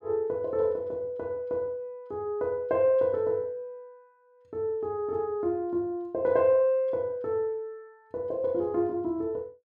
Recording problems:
none

